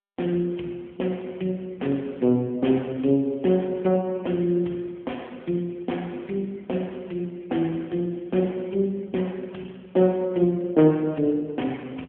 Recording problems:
phone line; 130 Hz to 3.4 kHz, AMR-NB

